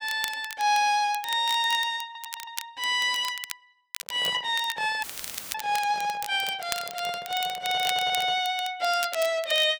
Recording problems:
crackle; vinyl, SNR 12 dB
audio stuttering; at 2 s and at 7.5 s
handling noise; from 4 to 8.5 s; peak -8 dB vs average level
dropout; at 5 s for 0.5 s; filled with static

